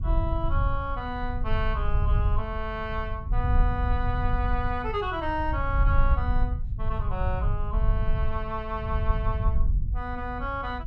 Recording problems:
rumble; below 80 Hz, SNR -3 dB

